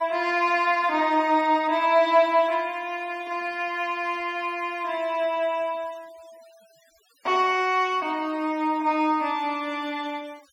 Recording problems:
denoising artefacts; signal-to-artefact ratio 26 dB

